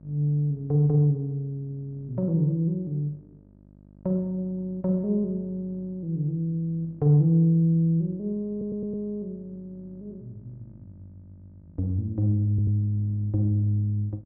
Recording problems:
hum; 50 Hz, harmonics up to 700 Hz, SNR 26 dB
stutter; at 8.5 s and at 13 s

